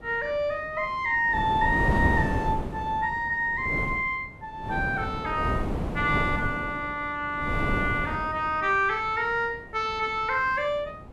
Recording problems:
wind noise; below 400 Hz, SNR 5 dB

